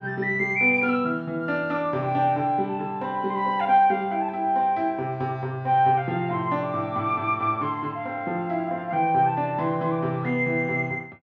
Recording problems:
none

